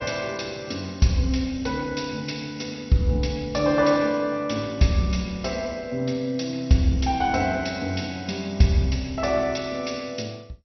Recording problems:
lossy codec; MP2, log-spectral distance 6 dB, nothing above 5.8 kHz

